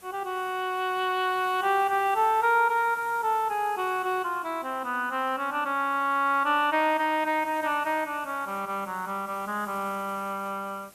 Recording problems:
hiss; slope -3 dB per octave, SNR 23 dB

